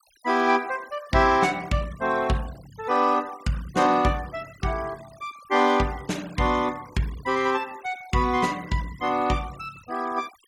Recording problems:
noise reduction artefacts; signal-to-artefact ratio 22 dB

